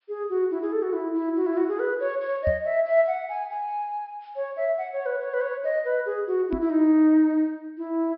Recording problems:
treble cut off; nothing above 5.4 kHz
microphone thump; at 2.5 s and at 6.5 s; peak -1 dB vs average level

